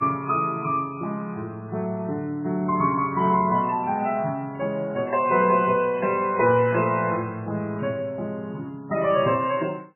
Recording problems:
lossy codec; MP3, log-spectral distance 2 dB, nothing above 2.5 kHz

